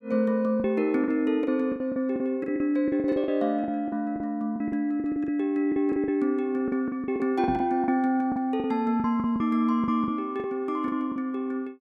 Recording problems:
packet loss; 14% of the sound replaced, filled with the last packet
microphone bump; at 7.5 s; peak -3 dB vs average level

